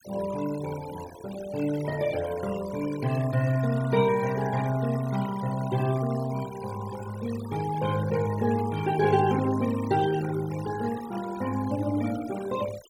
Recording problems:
noise reduction artefacts; signal-to-artefact ratio 15 dB

